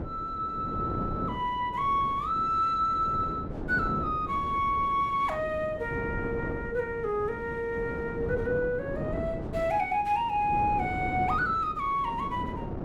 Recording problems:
wind on the microphone; below 410 Hz, SNR 8 dB

